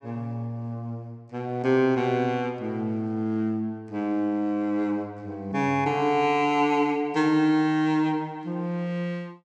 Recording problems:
none

